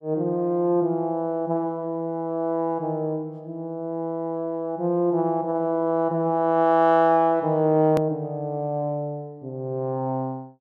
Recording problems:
hard cut with a click; at 8 s

